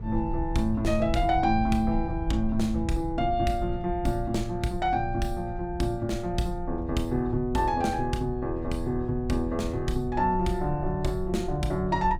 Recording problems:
low-frequency rumble; below 70 Hz, SNR 9 dB

